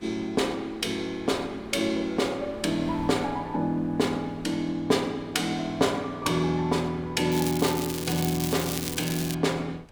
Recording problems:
wind on the microphone; below 720 Hz, SNR 22 dB
crackling; from 7.5 to 9.5 s; loose cable, SNR 6 dB

